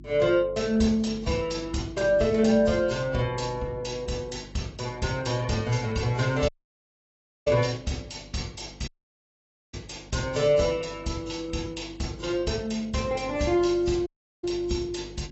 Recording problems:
codec artefacts; AAC, log-spectral distance 5 dB, nothing above 7.6 kHz
hum; 50 Hz, harmonics up to 350 Hz, SNR 20 dB
audio cutting out; at 6.5 s for 1 s, at 9 s for 1 s and at 14 s

